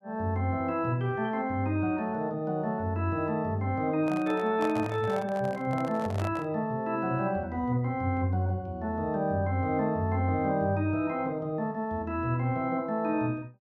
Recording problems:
microphone handling noise; from 4 to 6.5 s; peak -3 dB vs average level

